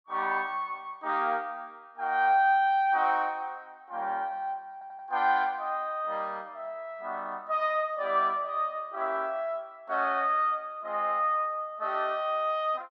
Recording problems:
stutter; at 4.5 s

